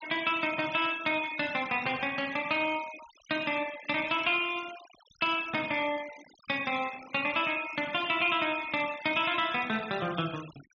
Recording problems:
treble cut off; nothing above 6.7 kHz
noise reduction artefacts; signal-to-artefact ratio 17 dB

